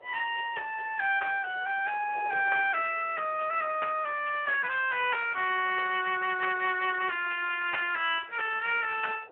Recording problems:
telephone audio; 320 Hz to 3.1 kHz, Speex
wind noise; below 810 Hz, SNR 23 dB

